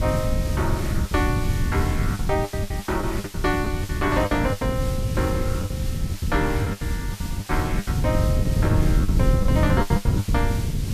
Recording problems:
hiss; slope +1 dB per octave, SNR 11 dB
wind on the microphone; below 150 Hz, SNR -2 dB
lost packets; 13% of the sound replaced, filled with the last packet

